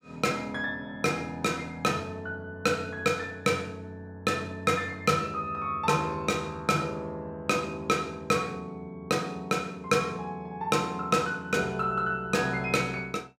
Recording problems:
none

